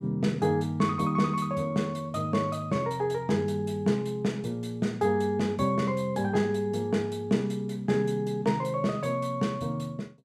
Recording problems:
none

